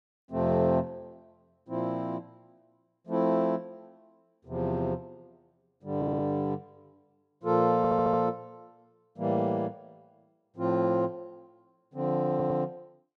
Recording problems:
stutter; at 6 s, at 8 s and at 12 s

